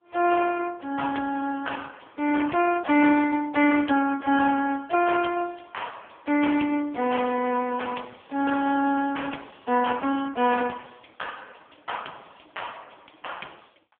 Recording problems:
phone line; 150 Hz to 3.3 kHz, AMR-NB

